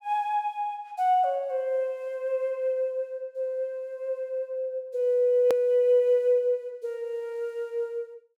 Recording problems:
edit click; at 5.5 s

